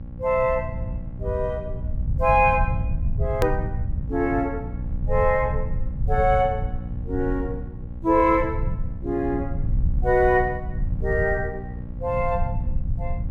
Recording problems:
electrical hum; 60 Hz, harmonics up to 840 Hz, SNR 14 dB
rumble; below 98 Hz, SNR 6 dB
click at an edit; at 3.5 s

